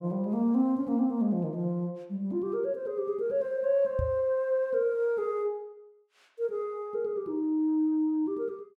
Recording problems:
microphone thump; at 4 s; peak 0 dB vs average level

